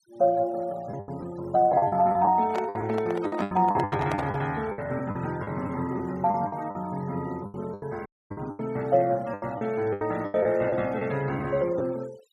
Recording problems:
denoising artefacts; signal-to-artefact ratio 23 dB
lost packets; 13% of the sound replaced, filled with the last packet
microphone handling noise; from 2.5 to 4.5 s; peak 0 dB vs average level
dropout; at 8 s

